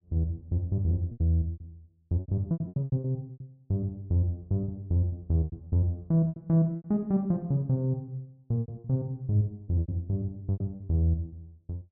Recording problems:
lost packets; 12% of the sound replaced, filled with repeated pitch periods

